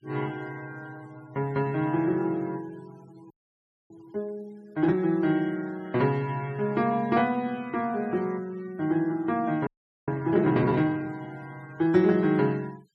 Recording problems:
denoising artefacts; signal-to-artefact ratio 27 dB
audio freezing; at 3.5 s for 0.5 s and at 9.5 s

